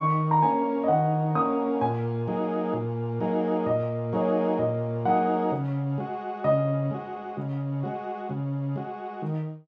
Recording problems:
none

